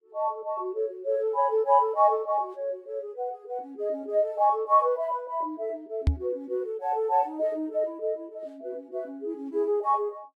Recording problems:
microphone bump; at 6 s; peak +8 dB vs average level

